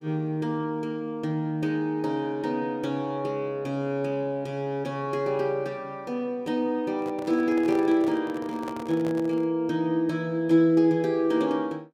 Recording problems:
microphone handling noise; from 7 to 9.5 s; peak -6 dB vs average level

